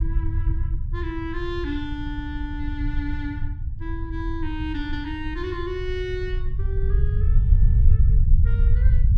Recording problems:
low-frequency rumble; below 80 Hz, SNR -7 dB

